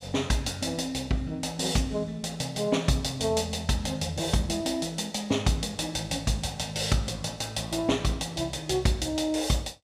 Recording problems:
none

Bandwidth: 14.5 kHz